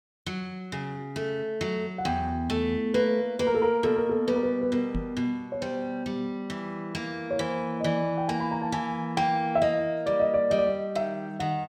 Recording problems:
microphone thump; at 5 s; peak 0 dB vs average level

